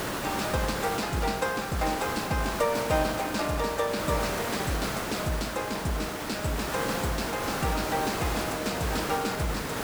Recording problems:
hiss; slope -5 dB per octave, SNR 2 dB

